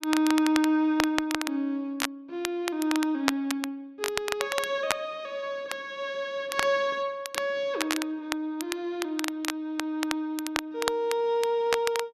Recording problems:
crackle; vinyl, SNR 5 dB

